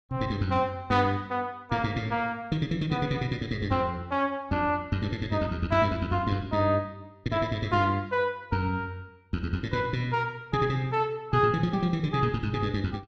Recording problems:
none

